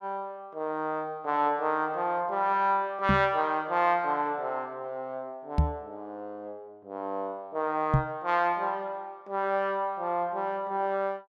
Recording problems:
microphone bump; at 3 s, at 5.5 s and at 8 s; peak +9 dB vs average level

